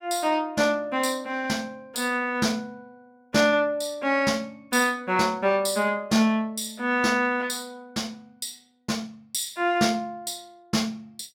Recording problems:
none

